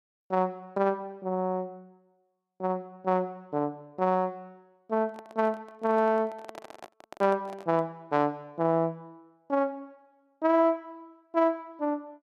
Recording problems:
microphone handling noise; from 5 to 8 s; peak -10 dB vs average level

